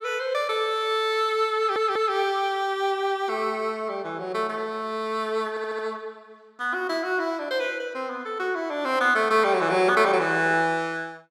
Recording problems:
audio stuttering; at 1.5 s and at 5.5 s

